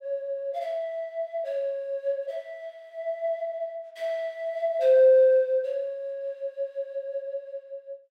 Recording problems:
none

